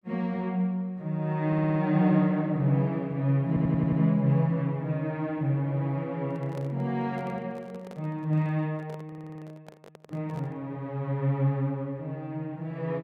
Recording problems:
audio stuttering; at 1.5 s, at 3.5 s and at 9 s
handling noise; from 6 to 11 s; peak -12 dB vs average level

